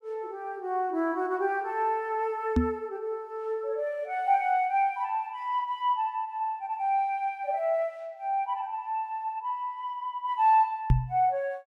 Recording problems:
microphone bump; at 2.5 s and at 11 s; peak +9 dB vs average level

